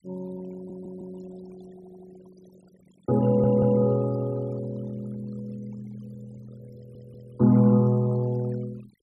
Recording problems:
denoising artefacts; signal-to-artefact ratio 26 dB
audio stuttering; 4 times, first at 0.5 s

